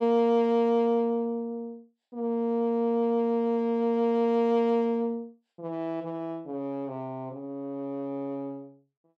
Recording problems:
none

